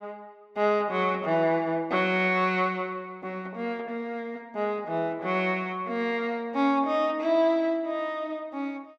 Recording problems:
none

